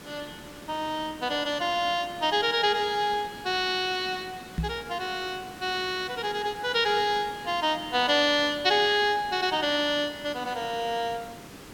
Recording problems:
background hiss; slope -4 dB per octave, SNR 18 dB
microphone thump; at 4.5 s; peak 0 dB vs average level

